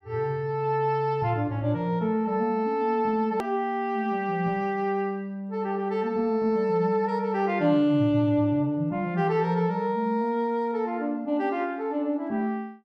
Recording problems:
hard cut with a click; at 3.5 s

